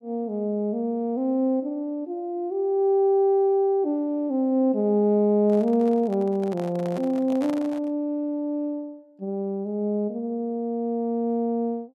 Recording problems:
handling noise; from 5.5 to 8 s; peak -9 dB vs average level

